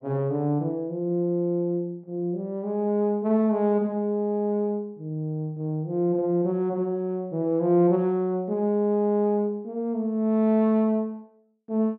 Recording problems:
none

